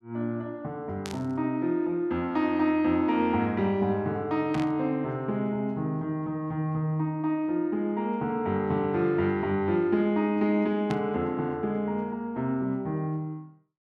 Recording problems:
static burst; at 1 s, at 4.5 s and at 11 s; peak -6 dB vs average level

